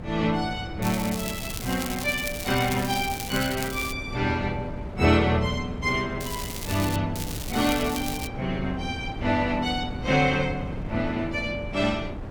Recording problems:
wind on the microphone; below 300 Hz, SNR 10 dB
crackling; from 1 to 4 s, at 6 s and from 7 to 8.5 s; loose cable, SNR 8 dB

